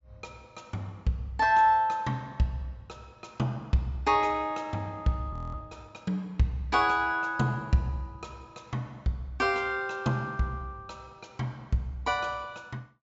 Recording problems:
treble missing; nothing above 8 kHz
frozen audio; at 5.5 s

